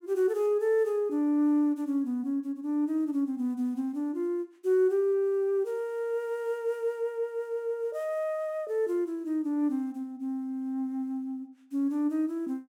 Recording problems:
none

